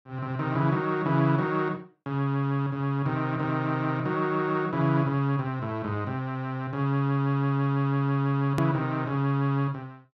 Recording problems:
hard cut with a click; at 8.5 s

